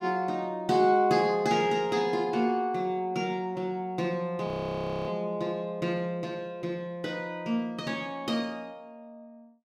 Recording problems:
frozen audio; at 4.5 s for 0.5 s

